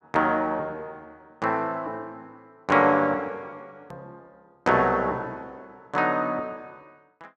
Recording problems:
hard cut with a click; at 4 s

